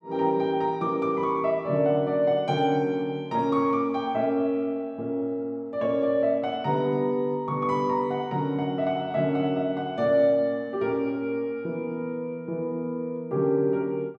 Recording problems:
none

